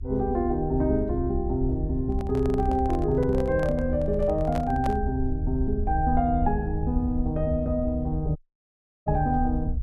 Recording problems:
low-frequency rumble; below 76 Hz, SNR 5 dB
handling noise; from 2 to 5 s; peak -4 dB vs average level
audio cutting out; at 8.5 s for 0.5 s

